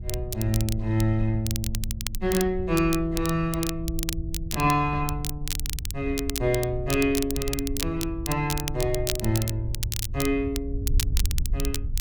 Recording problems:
wind noise; below 74 Hz, SNR 7 dB
crackling; vinyl, SNR 7 dB

